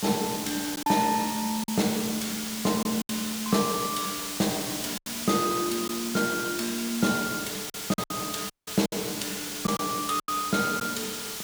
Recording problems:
background hiss; slope +2 dB per octave, SNR 4 dB
packet loss; 5% of the sound replaced, filled with silence
audio cutting out; at 8.5 s

